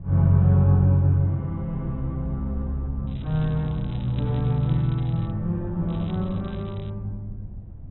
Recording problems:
low-pass filter; nothing above 3.9 kHz
wind on the microphone; below 110 Hz, SNR 15 dB
crackle; from 3 to 5.5 s and from 6 to 7 s; loose cable, SNR 27 dB

